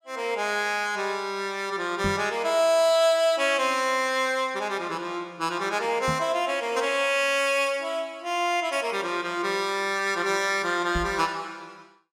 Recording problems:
knock on the microphone; at 2 s, at 6 s and at 11 s; peak -2 dB vs average level

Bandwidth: 16.5 kHz